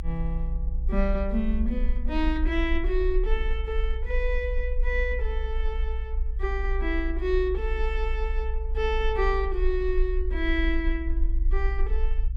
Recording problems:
low-frequency rumble; below 56 Hz, strongest tone 32 Hz, SNR 0 dB

